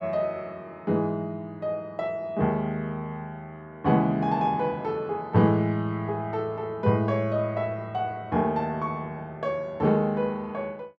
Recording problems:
none

